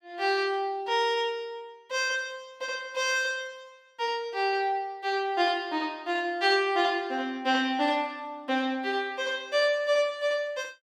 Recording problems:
none

